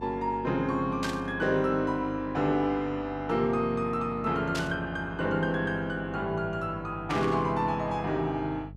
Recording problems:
hum; 50 Hz, harmonics up to 450 Hz, SNR 16 dB
burst of static; at 1 s, at 4.5 s and at 7 s; peak -2 dB vs average level

